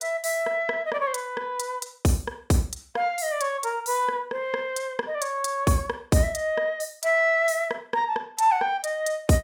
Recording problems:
none

